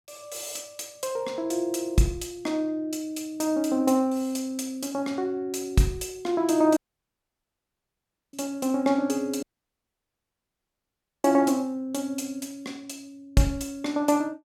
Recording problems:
dropout; at 7 s for 1.5 s and at 9.5 s for 2 s

